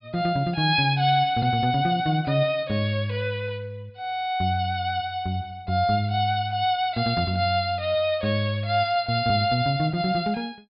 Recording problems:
low-pass filter; nothing above 5.5 kHz

